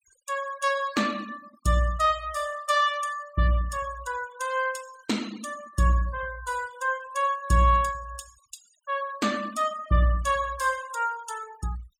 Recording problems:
noise reduction artefacts; signal-to-artefact ratio 19 dB

